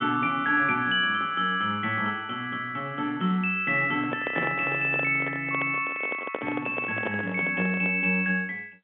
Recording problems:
phone line; 150 Hz to 3.9 kHz, G.711
handling noise; from 4 to 8 s; peak -2 dB vs average level

